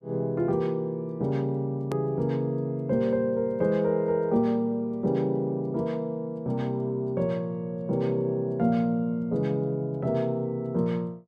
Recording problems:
click at an edit; at 2 s

